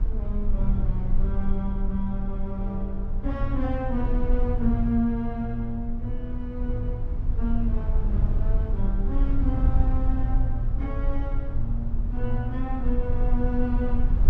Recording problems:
rumble; below 56 Hz, SNR -2 dB

